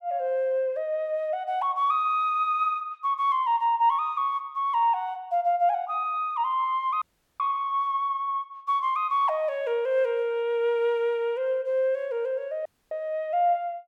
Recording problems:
audio cutting out; at 7 s and at 13 s

